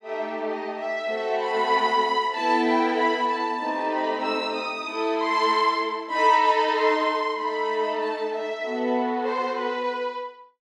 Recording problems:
none

